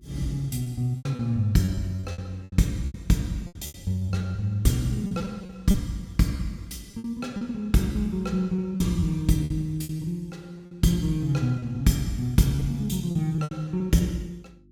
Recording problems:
mains hum; 50 Hz, harmonics up to 350 Hz, SNR 30 dB
packet loss; 10% of the sound replaced, filled with repeated pitch periods

